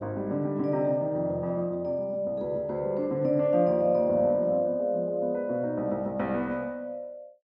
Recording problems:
none

